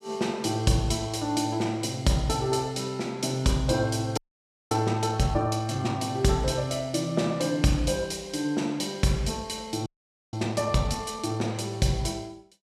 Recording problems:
audio freezing; at 4 s for 0.5 s and at 10 s

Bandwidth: 14.5 kHz